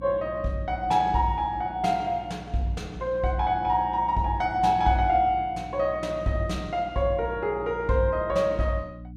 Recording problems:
electrical hum; 60 Hz, harmonics up to 300 Hz, SNR 17 dB

